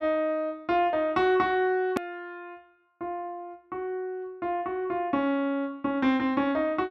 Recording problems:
hard cut with a click; at 2 s

